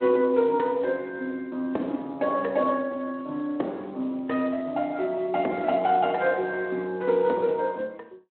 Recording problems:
telephone audio; 220 Hz to 3.7 kHz, Speex

